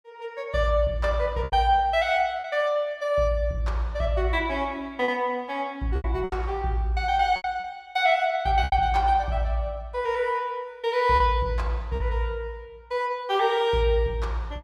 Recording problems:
lost packets; 4% of the sound replaced, filled with repeated pitch periods

